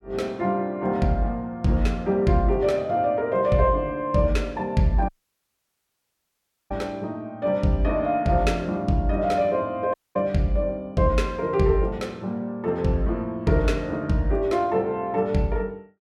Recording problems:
dropout; at 5 s for 1.5 s and at 10 s

